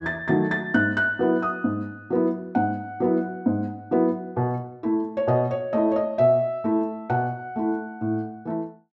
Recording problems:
none

